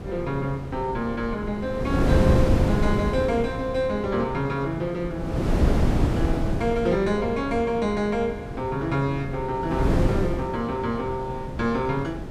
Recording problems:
wind on the microphone; below 300 Hz, SNR 1 dB

